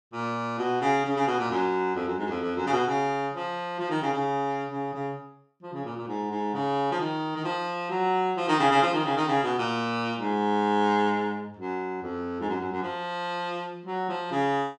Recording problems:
none

